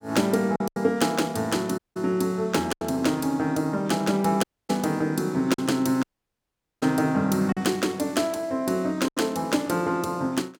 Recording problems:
lost packets; 4% of the sound replaced, filled with silence
dropout; at 2 s, at 4.5 s and at 6 s for 1 s

